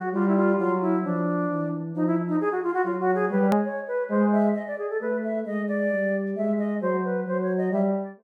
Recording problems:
click at an edit; at 3.5 s

